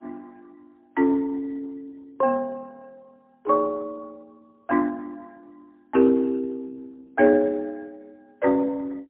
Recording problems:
phone line; 220 Hz to 3.2 kHz, AMR-NB, then MP3

